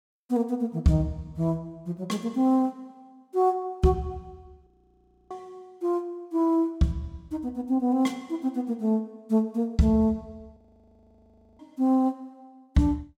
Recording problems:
frozen audio; at 4.5 s for 0.5 s and at 11 s for 1 s

